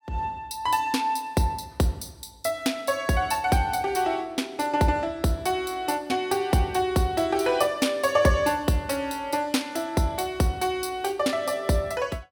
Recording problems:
none

